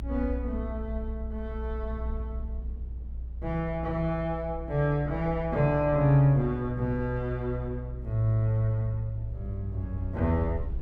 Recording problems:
rumble; below 62 Hz, strongest tone 60 Hz, SNR 9 dB

